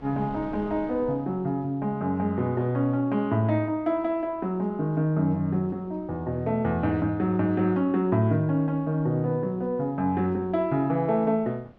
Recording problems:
wind on the microphone; below 540 Hz, SNR 25 dB

